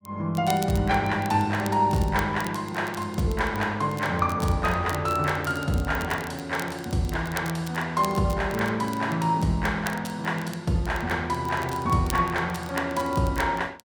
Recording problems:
crackling; vinyl, SNR 18 dB

